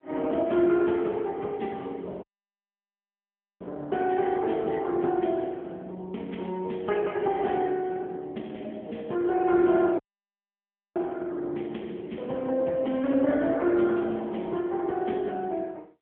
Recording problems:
telephone audio; 170 Hz to 3.3 kHz, AMR-NB
audio cutting out; at 2 s for 1.5 s and at 10 s for 1 s

